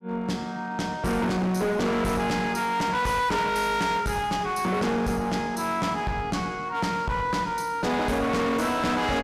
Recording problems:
distortion; hard clipping, uneven, signal-to-distortion ratio 6 dB

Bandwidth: 14.5 kHz